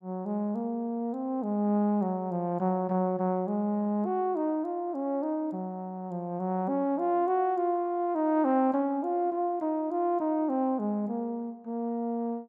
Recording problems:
none

